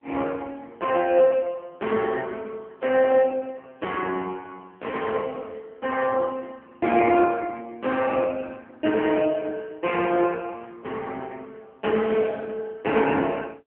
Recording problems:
phone line; 240 Hz to 3.1 kHz, AMR-NB

